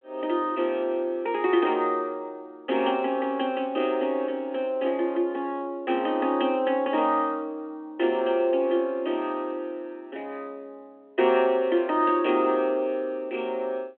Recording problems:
telephone audio; 240 Hz to 3.3 kHz, G.726

